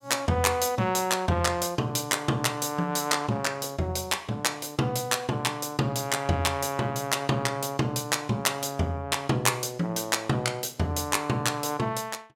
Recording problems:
none

